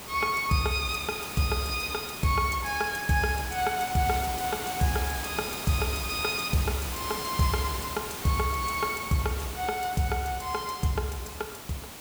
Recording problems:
hiss; slope -3 dB per octave, SNR 7 dB

